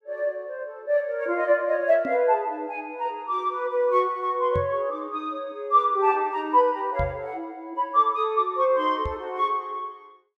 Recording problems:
knock on the microphone; 4 times, first at 2 s; peak -2 dB vs average level

